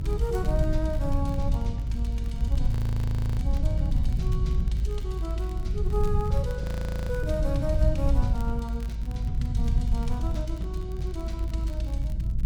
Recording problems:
hum; 60 Hz, harmonics up to 600 Hz, SNR 19 dB
rumble; below 96 Hz, SNR -7 dB
wind noise; below 190 Hz, SNR 11 dB
crackling; vinyl, SNR 20 dB
frozen audio; at 2.5 s for 0.5 s and at 6.5 s

